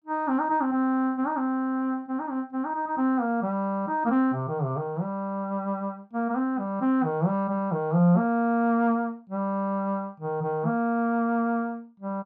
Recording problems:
none

